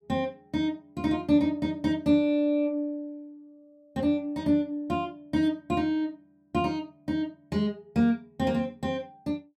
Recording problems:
none

